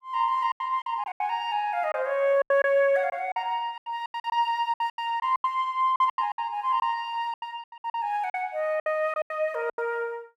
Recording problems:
packet loss; 15% of the sound replaced, filled with silence

